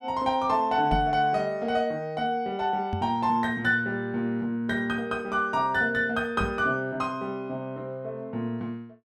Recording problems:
knock on the microphone; at 1 s, at 3 s and at 6.5 s; peak +1 dB vs average level

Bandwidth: 12.5 kHz